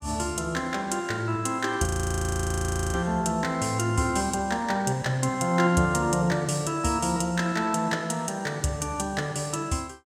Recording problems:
frozen audio; at 2 s for 1 s

